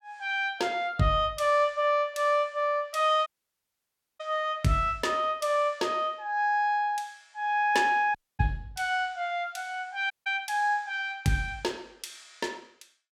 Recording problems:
audio cutting out; at 3.5 s for 1 s, at 8 s and at 10 s

